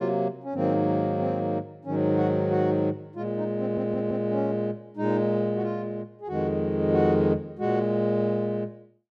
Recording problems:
audio stuttering; at 3.5 s

